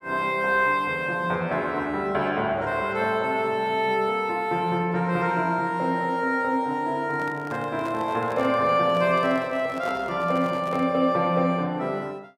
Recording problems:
handling noise; from 7 to 11 s; peak -9 dB vs average level

